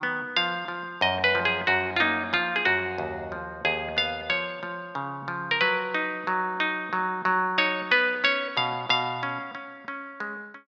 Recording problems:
none

